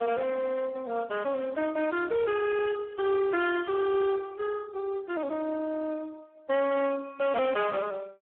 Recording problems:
telephone audio; 280 Hz to 2.3 kHz, Speex
distorted audio; hard clipping, uneven, signal-to-distortion ratio 5 dB

